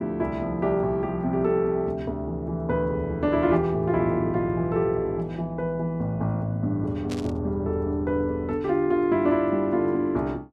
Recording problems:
burst of static; at 7 s; peak -8 dB vs average level

